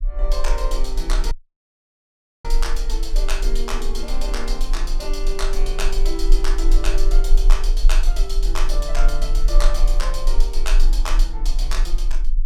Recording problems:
low-frequency rumble; below 32 Hz, strongest tone 24 Hz, SNR -6 dB
dropout; at 1.5 s for 1 s

